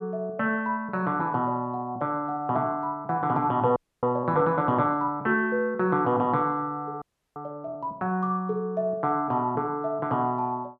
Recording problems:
audio freezing; at 4 s and at 7 s

